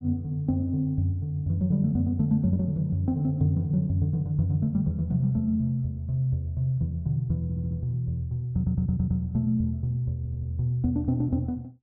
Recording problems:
stutter; at 7.5 s, at 8.5 s and at 10 s

